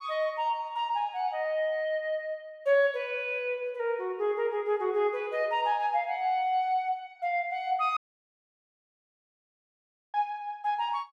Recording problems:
dropout; at 8 s for 2 s

